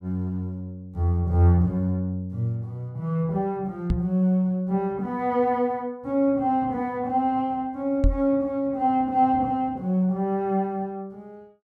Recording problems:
knock on the microphone; at 4 s and at 8 s; peak +6 dB vs average level

